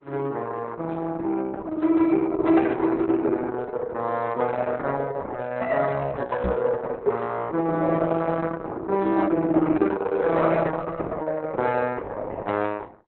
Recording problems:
lossy codec; Opus, log-spectral distance 3 dB, nothing above 4 kHz
microphone bump; at 6.5 s; peak 0 dB vs average level

